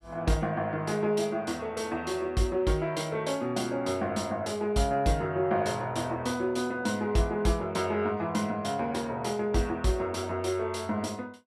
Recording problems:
none

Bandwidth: 14.5 kHz